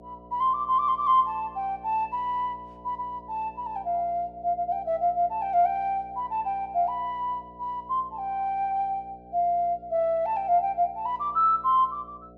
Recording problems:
hum; 60 Hz, harmonics up to 720 Hz, SNR 23 dB

